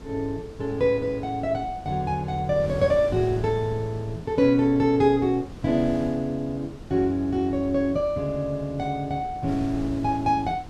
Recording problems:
wind noise; below 320 Hz, SNR 15 dB

